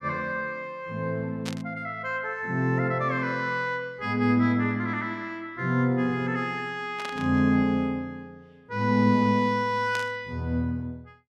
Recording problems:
burst of static; at 1.5 s, at 7 s and at 10 s; peak -5 dB vs average level

